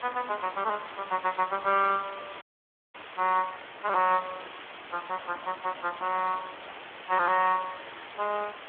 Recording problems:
phone line; 280 Hz to 3.7 kHz, Speex
hiss; SNR 14 dB
crackling; from 1 to 3 s, from 4 to 5 s and from 5.5 to 8 s; loose cable, SNR 26 dB
frozen audio; at 2.5 s for 0.5 s
handling noise; from 5 to 7 s; peak -13 dB vs average level

